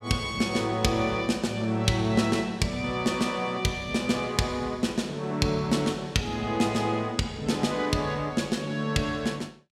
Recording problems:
none

